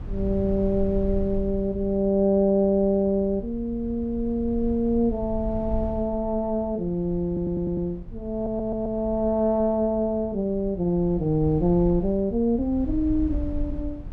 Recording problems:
rumble; below 80 Hz, SNR 12 dB
audio stuttering; at 7.5 s and at 8.5 s

